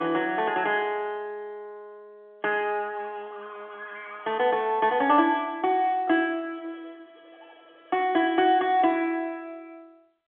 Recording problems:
phone line; 220 Hz to 3.5 kHz, G.711

